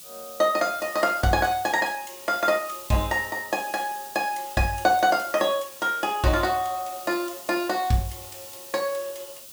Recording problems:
background hiss; SNR 15 dB

